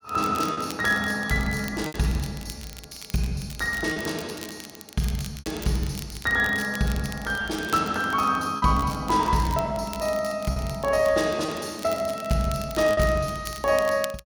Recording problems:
crackle; vinyl, SNR 16 dB
packet loss; 4% of the sound replaced, filled with repeated pitch periods

